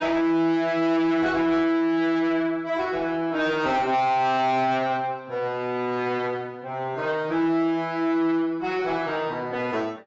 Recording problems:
codec artefacts; AAC, log-spectral distance 2 dB, nothing above 7.6 kHz
distortion; soft clipping, signal-to-distortion ratio 11 dB

